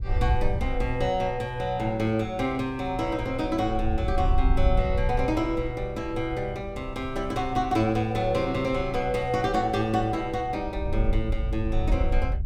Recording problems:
wind on the microphone; below 66 Hz, SNR 5 dB

